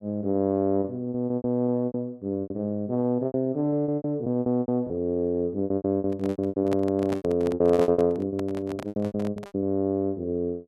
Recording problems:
packet loss; 18% of the sound replaced, filled with repeated pitch periods
microphone handling noise; from 6 to 9.5 s; peak -4 dB vs average level

